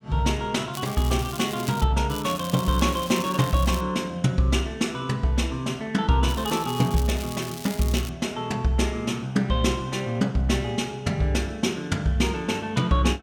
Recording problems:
crackling; from 0.5 to 2 s, from 2 to 4 s and from 6.5 to 8 s; loose cable, SNR 13 dB

